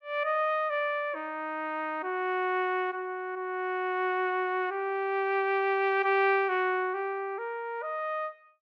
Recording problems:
none

